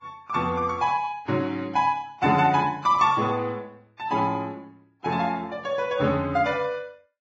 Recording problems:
lossy compression; Vorbis, log-spectral distance 2 dB, nothing above 7.3 kHz

